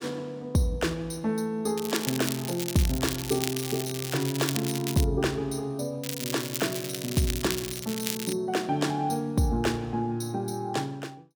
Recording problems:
crackling; from 2 to 5 s and from 6 to 8.5 s; loose cable, SNR 5 dB

